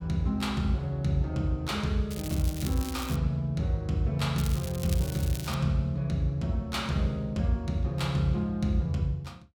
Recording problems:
crackling; from 2 to 3 s and from 4.5 to 5.5 s; loose cable, SNR 13 dB

